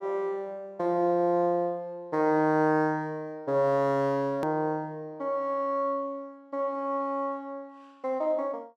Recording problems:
edit click; at 4.5 s

